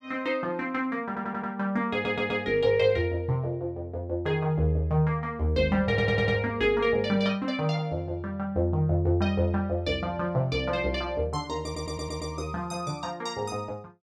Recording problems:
audio stuttering; 4 times, first at 1 s

